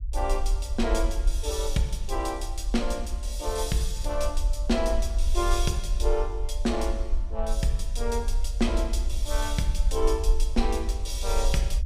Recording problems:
rumble; below 50 Hz, SNR 0 dB

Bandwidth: 15.5 kHz